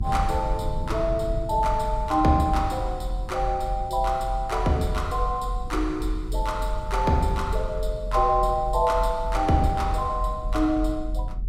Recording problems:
low-frequency rumble; below 48 Hz, strongest tone 42 Hz, SNR 6 dB

